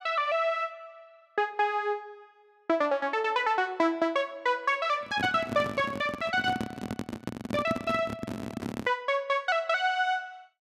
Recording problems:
microphone handling noise; from 5 to 9 s; peak +1 dB vs average level

